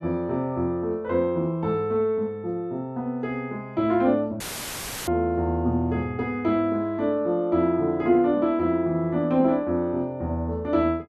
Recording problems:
audio cutting out; at 4.5 s for 0.5 s; filled with static

